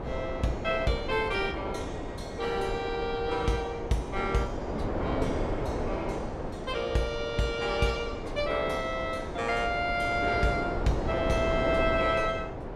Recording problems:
wind on the microphone; below 630 Hz, SNR 4 dB

